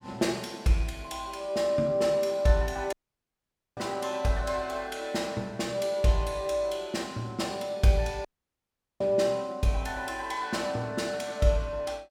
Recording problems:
audio cutting out; at 3 s for 1 s and at 8.5 s for 1 s

